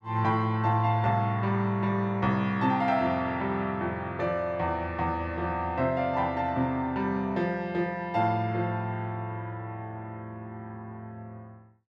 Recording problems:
none

